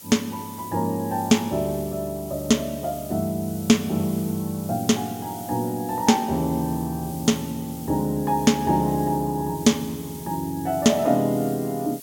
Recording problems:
hiss; SNR 16 dB

